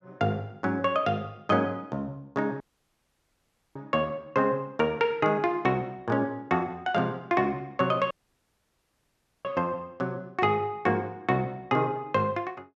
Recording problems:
audio cutting out; at 2.5 s for 1 s and at 8 s for 1.5 s

